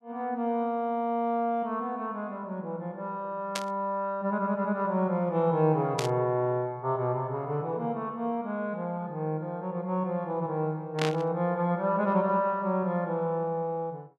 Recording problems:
burst of static; at 3.5 s, at 6 s and at 11 s; peak +1 dB vs average level

